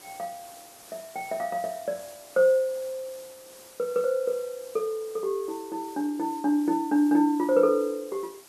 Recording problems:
background hiss; SNR 21 dB

